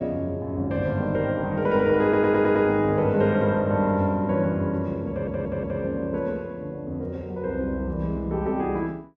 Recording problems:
audio stuttering; at 2 s and at 5 s

